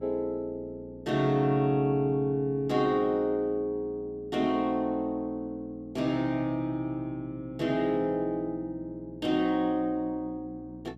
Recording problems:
hum; 60 Hz, harmonics up to 600 Hz, SNR 20 dB

